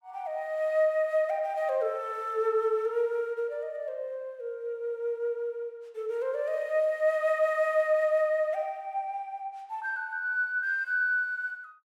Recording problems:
none

